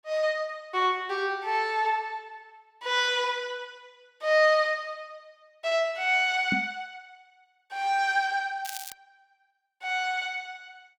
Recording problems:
microphone thump; at 6.5 s; peak +1 dB vs average level
crackle; at 8.5 s; loose cable, SNR 13 dB

